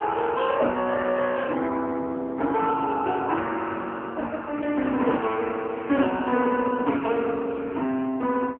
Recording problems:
telephone audio; 220 Hz to 3.4 kHz, AMR-NB

